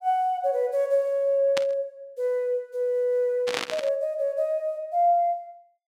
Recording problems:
static burst; at 1.5 s and at 3.5 s; peak +1 dB vs average level

